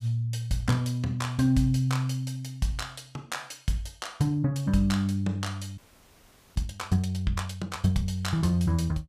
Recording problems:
audio freezing; at 6 s for 1 s

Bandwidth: 15 kHz